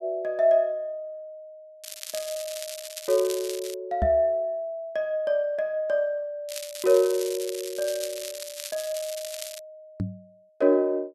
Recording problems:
crackle; from 2 to 3.5 s and from 6.5 to 9.5 s; loose cable, SNR 10 dB
microphone thump; at 4 s and at 10 s; peak +2 dB vs average level

